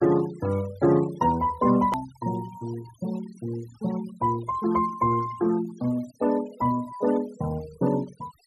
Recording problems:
denoising artefacts; signal-to-artefact ratio 19 dB
edit click; at 2 s

